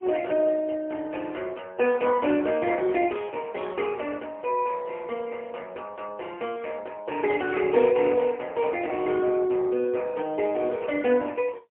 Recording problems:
phone line; 220 Hz to 3.2 kHz, AMR-NB, then MP3

